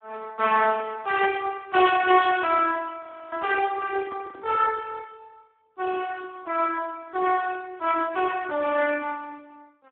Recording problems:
telephone audio; 240 Hz to 2.2 kHz, Speex
frozen audio; at 3 s
microphone handling noise; from 3.5 to 5 s; peak -14 dB vs average level

